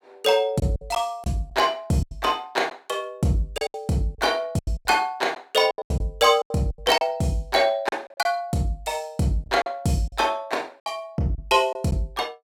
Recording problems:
lost packets; 10% of the sound replaced, filled with silence

